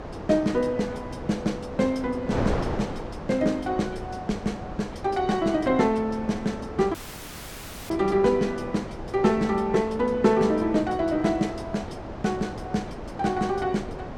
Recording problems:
wind noise; below 710 Hz, SNR 10 dB
audio cutting out; at 7 s for 1 s

